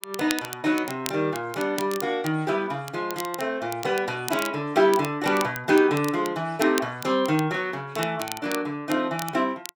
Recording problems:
crackling; vinyl, SNR 13 dB

